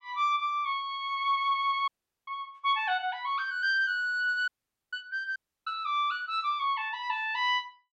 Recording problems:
audio cutting out; at 2 s, at 4.5 s and at 5.5 s

